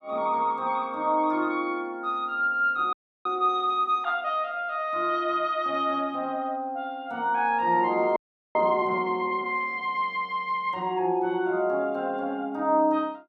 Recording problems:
audio freezing; at 3 s and at 8 s

